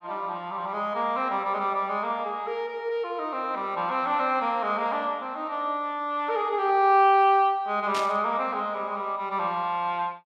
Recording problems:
static burst; at 8 s; peak -3 dB vs average level

